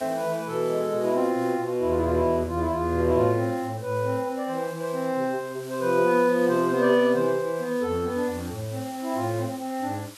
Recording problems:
background hiss; SNR 21 dB

